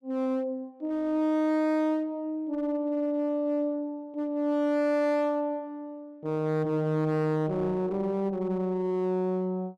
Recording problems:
distorted audio; hard clipping, uneven, signal-to-distortion ratio 11 dB

